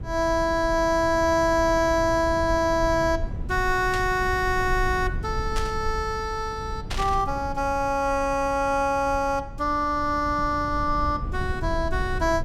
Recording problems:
low-frequency rumble; below 100 Hz, SNR 10 dB
burst of static; at 4 s, at 5.5 s and at 7 s; peak -4 dB vs average level

